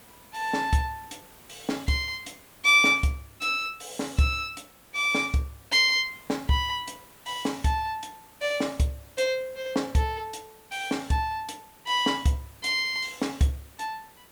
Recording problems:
background hiss; slope -3 dB per octave, SNR 25 dB

